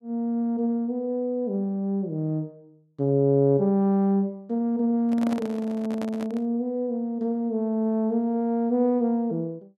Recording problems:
handling noise; from 5 to 6.5 s; peak -4 dB vs average level

